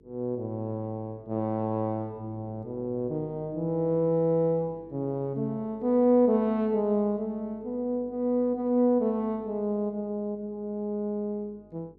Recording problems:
hum; 50 Hz, harmonics up to 450 Hz, SNR 26 dB

